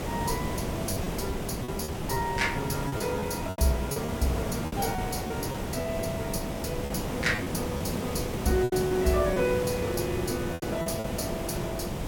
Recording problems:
mains hum; 50 Hz, harmonics up to 600 Hz, SNR 20 dB
hiss; slope -7 dB per octave, SNR 2 dB
wind noise; below 140 Hz, SNR 12 dB
lost packets; 7% of the sound replaced, filled with repeated pitch periods
crackle; from 8 to 10 s; loose cable, SNR 22 dB

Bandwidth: 17 kHz